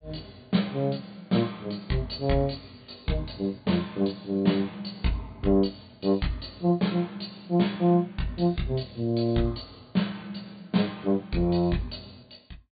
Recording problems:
low-pass filter; nothing above 4.6 kHz

